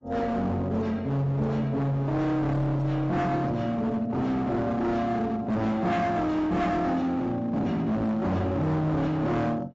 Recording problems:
codec artefacts; AAC, log-spectral distance 2 dB, nothing above 7.6 kHz
distorted audio; hard clipping, signal-to-distortion ratio 8 dB

